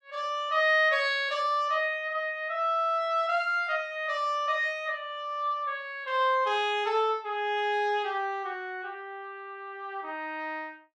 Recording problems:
none

